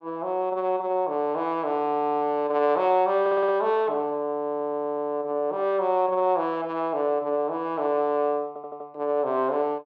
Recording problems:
stutter; at 3 s, at 4.5 s and at 8.5 s

